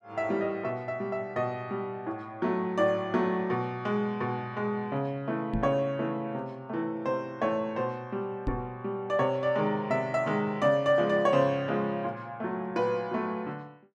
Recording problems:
microphone thump; at 5.5 s and at 8.5 s; peak +2 dB vs average level

